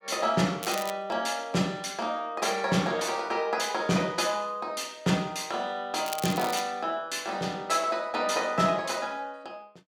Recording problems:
crackling; at 0.5 s and at 6 s; loose cable, SNR 10 dB

